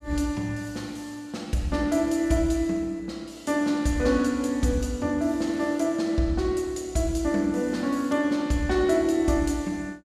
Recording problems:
none

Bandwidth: 14.5 kHz